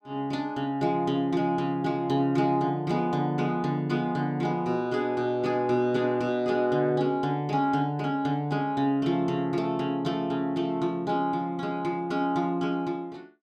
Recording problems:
none

